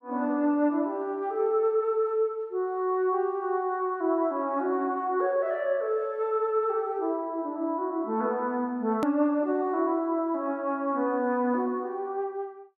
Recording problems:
hard cut with a click; at 9 s

